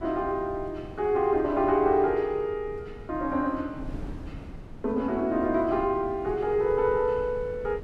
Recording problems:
wind on the microphone; below 230 Hz, SNR 16 dB

